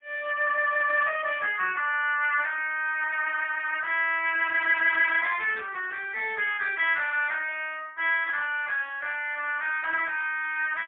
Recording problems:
phone line; 370 Hz to 3.4 kHz, AMR-NB, then MP3

